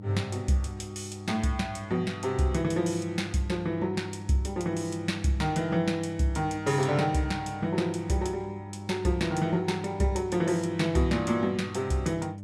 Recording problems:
electrical hum; 50 Hz, harmonics up to 600 Hz, SNR 12 dB

